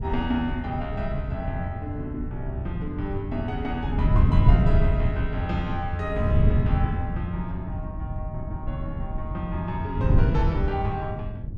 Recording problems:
wind noise; below 120 Hz, SNR -4 dB

